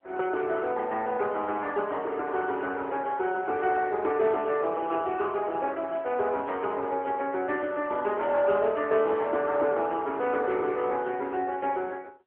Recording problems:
telephone audio; 300 Hz to 3.3 kHz, AMR-NB

